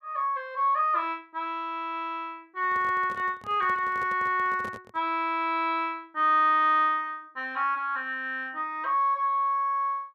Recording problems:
microphone handling noise; from 2.5 to 5 s; peak -10 dB vs average level

